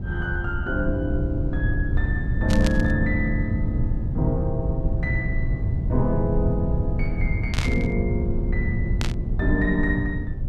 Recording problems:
hum; 60 Hz, harmonics up to 660 Hz, SNR 19 dB
rumble; below 120 Hz, SNR -1 dB
burst of static; at 2.5 s, at 7.5 s and at 9 s; peak +2 dB vs average level

